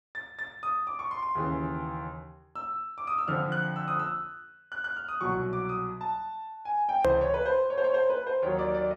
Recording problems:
hard cut with a click; at 7 s

